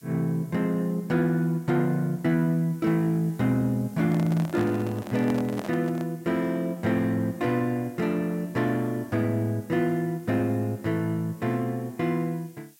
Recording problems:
background hiss; slope +4 dB per octave, SNR 27 dB
handling noise; from 4 to 6 s; peak -5 dB vs average level

